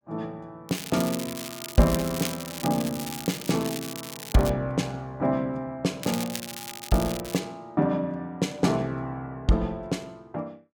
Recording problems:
crackle; from 0.5 to 4.5 s and from 6 to 7.5 s; loose cable, SNR 8 dB

